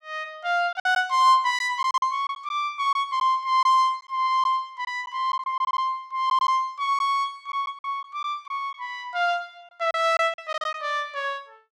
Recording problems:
packet loss; 7% of the sound replaced, filled with silence

